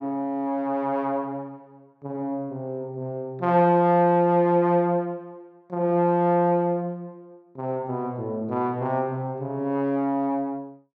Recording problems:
none

